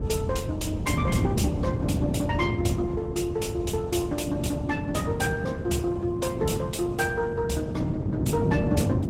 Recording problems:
lossy compression; Opus, log-spectral distance 3 dB, nothing above 16 kHz
rumble; below 170 Hz, SNR 4 dB
wind on the microphone; below 260 Hz, SNR 0 dB

